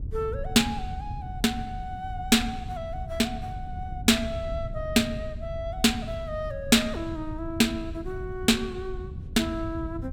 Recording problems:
wind on the microphone; below 120 Hz, SNR 10 dB

